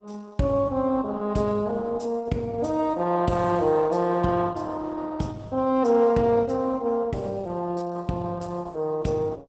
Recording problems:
lossy codec; Opus, log-spectral distance 3 dB, nothing above 8 kHz

